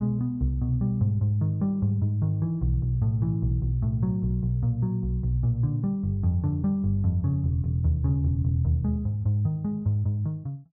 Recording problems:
none

